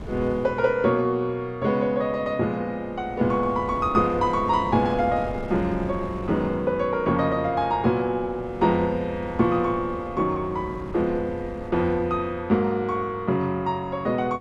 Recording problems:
wind on the microphone; below 320 Hz, SNR 15 dB

